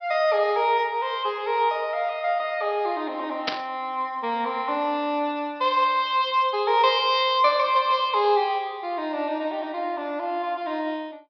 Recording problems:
treble cut off; nothing above 5.5 kHz
static burst; at 3.5 s; peak +3 dB vs average level

